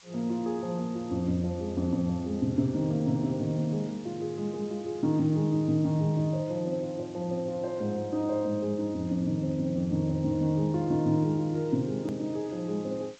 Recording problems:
codec artefacts; G.722, log-spectral distance 2 dB, nothing above 13.1 kHz
background hiss; slope +1 dB per octave, SNR 25 dB
hard cut with a click; at 12 s

